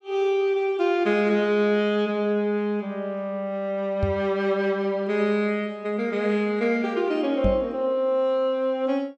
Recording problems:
microphone thump; at 4 s and at 7.5 s; peak +2 dB vs average level

